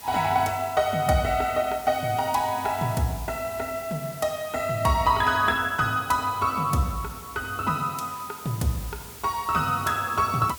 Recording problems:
background hiss; slope -1 dB per octave, SNR 16 dB

